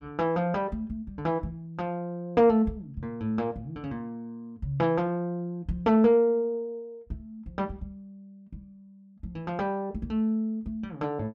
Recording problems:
none

